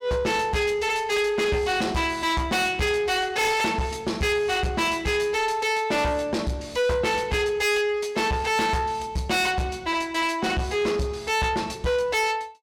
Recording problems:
distortion; soft clipping, signal-to-distortion ratio 7 dB

